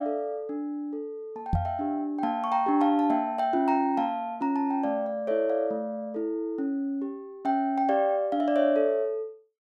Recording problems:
microphone bump; at 1.5 s; peak +4 dB vs average level

